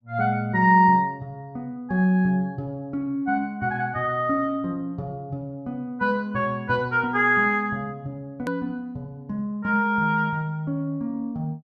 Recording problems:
hard cut with a click; at 8.5 s

